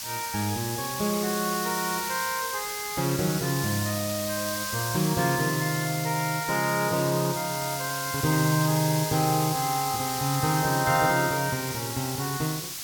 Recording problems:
hiss; SNR 4 dB

